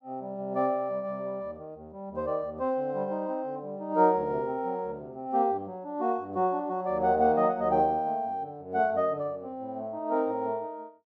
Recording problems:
none

